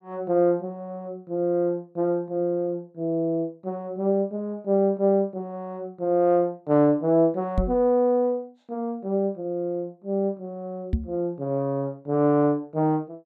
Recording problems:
knock on the microphone; at 7.5 s and at 11 s; peak +4 dB vs average level

